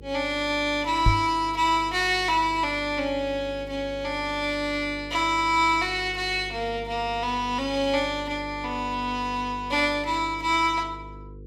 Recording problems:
hum; 50 Hz, harmonics up to 500 Hz, SNR 18 dB
knock on the microphone; at 1 s; peak +7 dB vs average level

